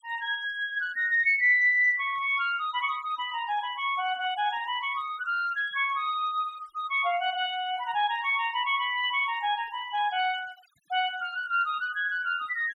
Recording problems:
denoising artefacts; signal-to-artefact ratio 24 dB

